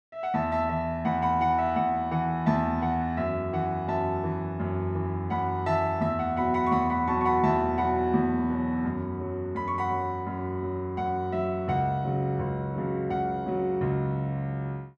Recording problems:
none

